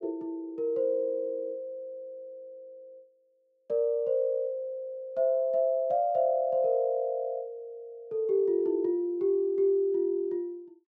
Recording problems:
none

